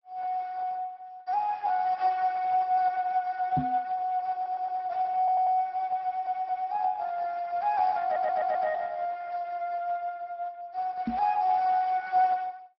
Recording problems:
treble cut off; nothing above 5.5 kHz
lossy compression; Speex, log-spectral distance 2 dB
microphone thump; at 3.5 s and at 11 s; peak +2 dB vs average level
audio stuttering; 4 times, first at 4.5 s

